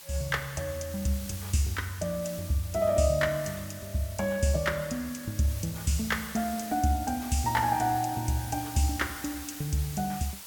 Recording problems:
background hiss; slope +1 dB per octave, SNR 12 dB

